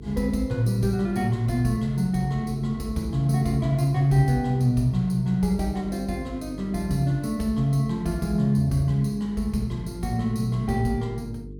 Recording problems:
electrical hum; 50 Hz, harmonics up to 450 Hz, SNR 17 dB

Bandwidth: 17.5 kHz